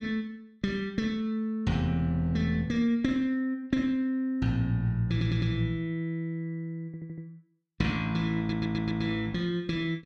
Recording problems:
audio stuttering; at 5 s, at 7 s and at 8.5 s

